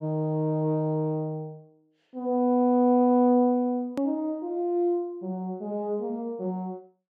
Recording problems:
hard cut with a click; at 4 s

